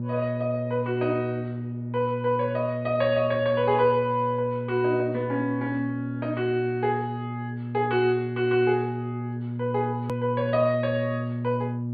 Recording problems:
treble missing; nothing above 4.6 kHz
hum; 60 Hz, harmonics up to 600 Hz, SNR 6 dB
click at an edit; at 10 s

